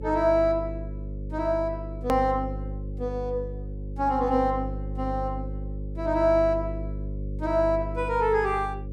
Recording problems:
hum; 50 Hz, harmonics up to 550 Hz, SNR 8 dB
edit click; at 2 s

